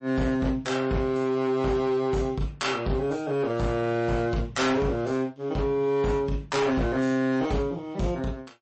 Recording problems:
codec artefacts; MP3, log-spectral distance 2 dB, nothing above 8.2 kHz
distorted audio; hard clipping, signal-to-distortion ratio 11 dB

